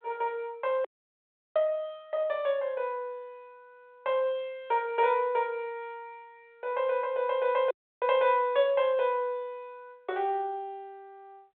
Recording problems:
phone line; 320 Hz to 3.7 kHz, G.726
dropout; at 1 s for 0.5 s and at 7.5 s

